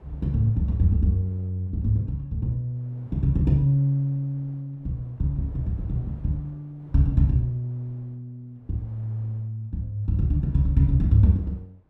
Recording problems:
wind noise; below 490 Hz, SNR 28 dB

